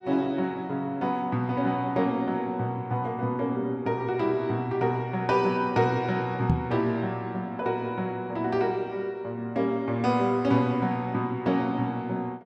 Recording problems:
microphone bump; at 6.5 s; peak +6 dB vs average level

